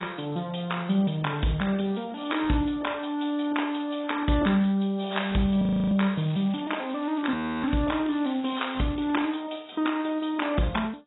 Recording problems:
lossy codec; AAC, log-spectral distance 7 dB, nothing above 3.8 kHz
frozen audio; at 5.5 s and at 7.5 s
crackle; from 6 to 9.5 s; loose cable, SNR 21 dB

